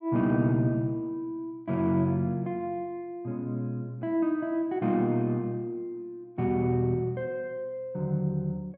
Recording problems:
none

